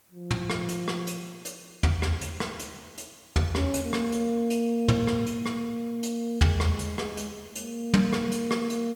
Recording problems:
hiss; slope -2 dB per octave, SNR 29 dB

